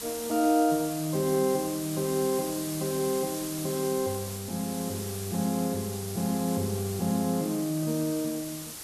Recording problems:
background hiss; slope 0 dB per octave, SNR 8 dB

